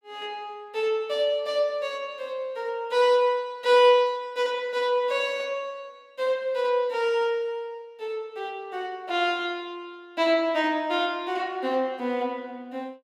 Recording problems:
none

